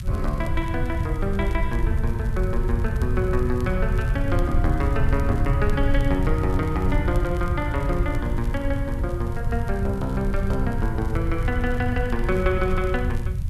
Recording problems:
background hiss; SNR 26 dB
rumble; below 100 Hz, SNR -1 dB
crackle; vinyl, SNR 25 dB

